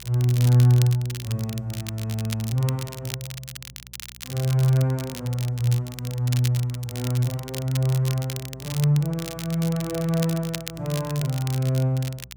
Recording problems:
hum; 60 Hz, harmonics up to 420 Hz, SNR 25 dB
crackle; vinyl, SNR 13 dB

